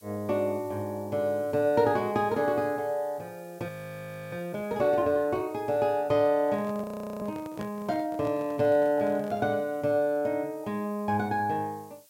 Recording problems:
background hiss; slope +2 dB per octave, SNR 28 dB
frozen audio; at 3.5 s for 0.5 s and at 7 s
microphone handling noise; from 6.5 to 9.5 s; peak -7 dB vs average level

